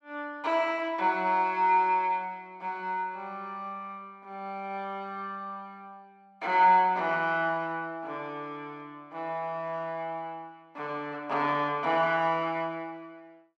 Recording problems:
none

